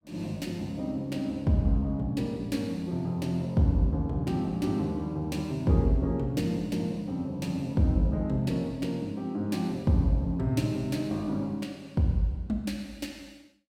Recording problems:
none

